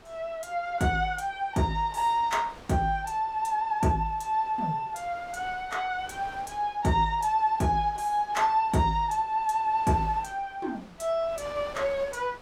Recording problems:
wind noise; below 1.7 kHz, SNR 22 dB

